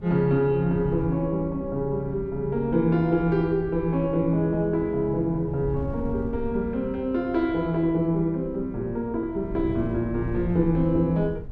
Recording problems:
wind on the microphone; below 130 Hz, SNR 13 dB

